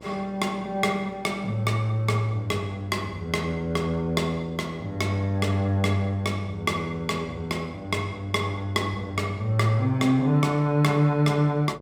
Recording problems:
hum; 60 Hz, harmonics up to 1.2 kHz, SNR 22 dB

